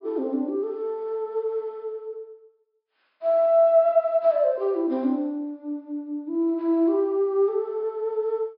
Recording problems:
treble missing; nothing above 5.5 kHz

